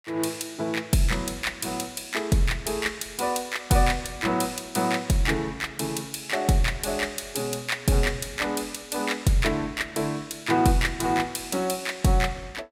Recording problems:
none

